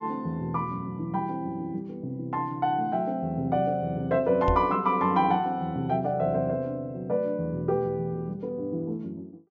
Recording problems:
treble missing; nothing above 8 kHz
microphone thump; at 4.5 s; peak +2 dB vs average level

